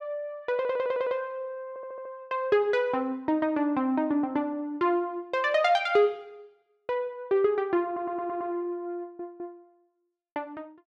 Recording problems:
audio stuttering; 4 times, first at 0.5 s

